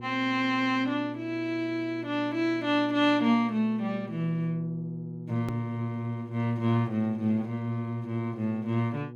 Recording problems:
electrical hum; 60 Hz, harmonics up to 840 Hz, SNR 14 dB
hard cut with a click; at 5.5 s

